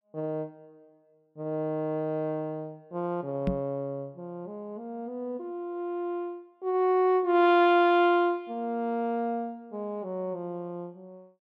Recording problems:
knock on the microphone; at 3.5 s; peak +3 dB vs average level

